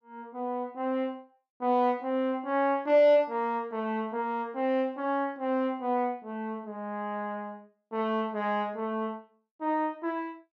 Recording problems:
none

